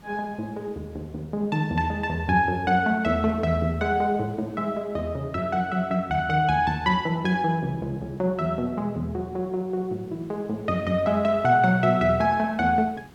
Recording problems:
hiss; slope -5 dB per octave, SNR 27 dB

